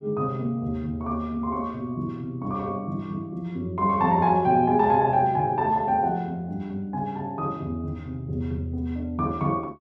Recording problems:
none

